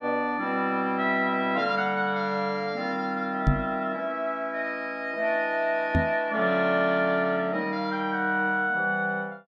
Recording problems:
microphone thump; at 3.5 s and at 6 s; peak +7 dB vs average level

